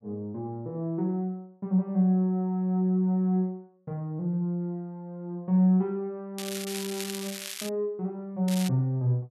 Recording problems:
crackling; from 6.5 to 7.5 s and at 8.5 s; loose cable, SNR 9 dB

